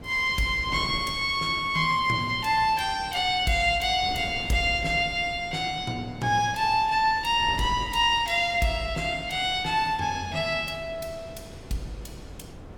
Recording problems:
wind noise; below 420 Hz, SNR 18 dB

